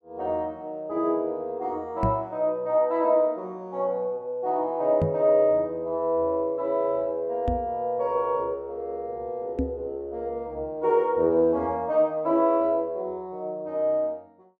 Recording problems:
microphone thump; 4 times, first at 2 s; peak +3 dB vs average level

